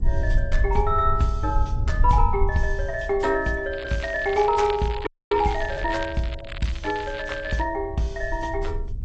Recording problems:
codec artefacts; G.722, then AAC, log-spectral distance 4 dB, nothing above 7.6 kHz
rumble; below 70 Hz, SNR 4 dB
crackle; from 3.5 to 7.5 s; loose cable, SNR 14 dB
frozen audio; at 5 s

